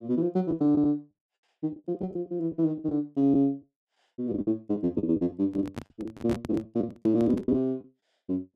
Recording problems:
lost packets; 11% of the sound replaced, filled with the last packet
handling noise; from 5.5 to 7.5 s; peak -2 dB vs average level

